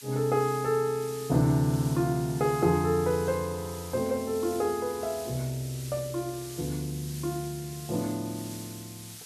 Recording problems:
hiss; slope +6 dB per octave, SNR 14 dB

